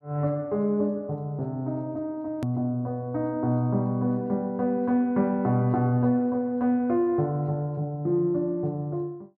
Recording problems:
edit click; at 2.5 s

